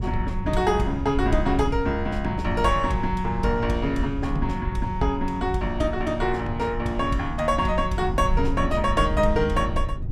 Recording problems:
low-frequency rumble; below 88 Hz, SNR 6 dB

